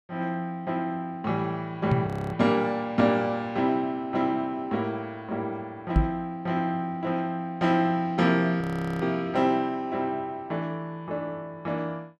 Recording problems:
microphone bump; at 2 s and at 6 s; peak +8 dB vs average level
frozen audio; at 2 s and at 8.5 s

